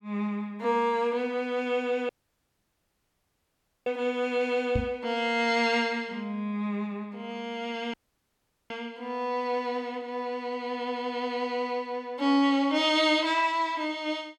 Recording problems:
audio cutting out; at 2 s for 2 s and at 8 s for 1 s
microphone thump; at 5 s; peak +3 dB vs average level

